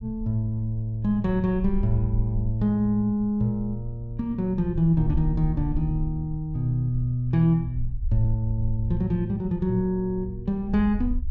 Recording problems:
low-frequency rumble; below 62 Hz, SNR 10 dB

